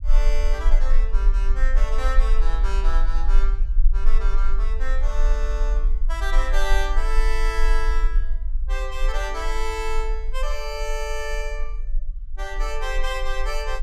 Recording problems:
rumble; below 36 Hz, strongest tone 22 Hz, SNR -5 dB

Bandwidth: 15.5 kHz